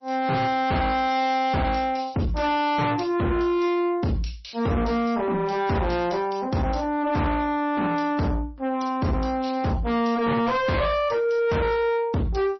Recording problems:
lossy codec; MP3, log-spectral distance 3 dB, nothing above 5.8 kHz
distorted audio; soft clipping, signal-to-distortion ratio 7 dB

